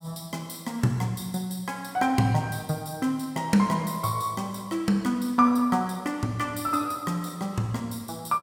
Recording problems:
none

